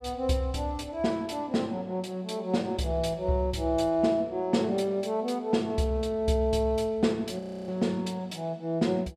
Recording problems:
frozen audio; at 7.5 s

